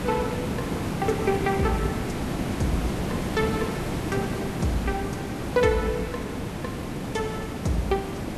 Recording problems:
lossy compression; Vorbis, log-spectral distance 4 dB, nothing above 12.3 kHz
hiss; slope -6 dB per octave, SNR 1 dB

